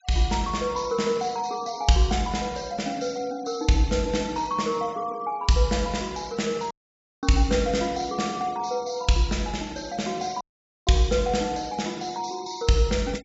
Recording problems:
low-pass filter; nothing above 8 kHz
noise reduction artefacts; signal-to-artefact ratio 23 dB
dropout; at 6.5 s for 0.5 s and at 10 s

